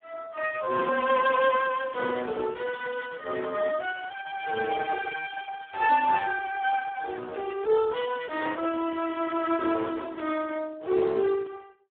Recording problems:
phone line; 280 Hz to 2.6 kHz, Speex

